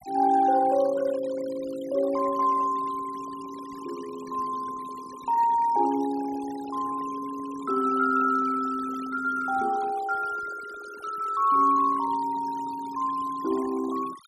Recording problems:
noise reduction artefacts; signal-to-artefact ratio 19 dB

